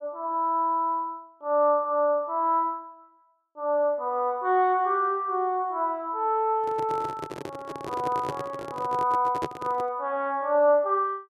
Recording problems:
microphone handling noise; from 6.5 to 10 s; peak -1 dB vs average level

